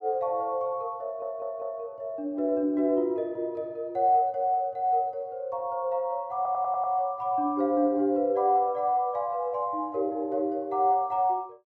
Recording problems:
stutter; at 1 s and at 6.5 s

